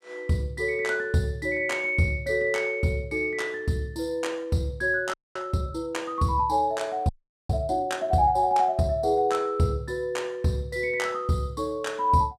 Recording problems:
audio freezing; at 5 s and at 7 s

